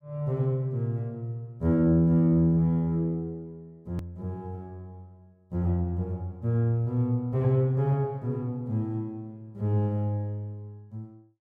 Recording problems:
edit click; at 4 s

